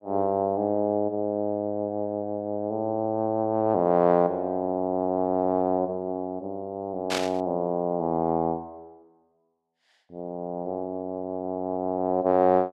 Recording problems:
static burst; at 7 s; peak +1 dB vs average level

